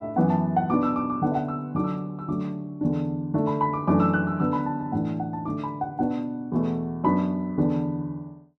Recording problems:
none

